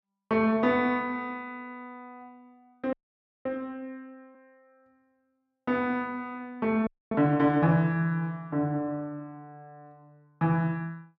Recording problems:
audio freezing; at 3 s for 0.5 s and at 7 s

